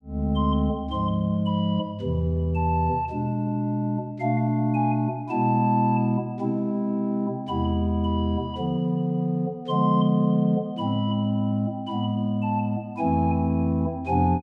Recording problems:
none

